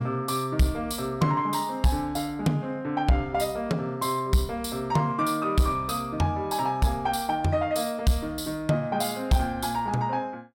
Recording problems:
distorted audio; soft clipping, signal-to-distortion ratio 11 dB

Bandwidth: 16.5 kHz